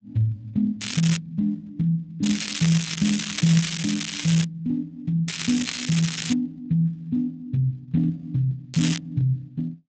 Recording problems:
lossy codec; Speex, log-spectral distance 7 dB, nothing above 13.1 kHz
crackling; 4 times, first at 1 s; loose cable, SNR 5 dB

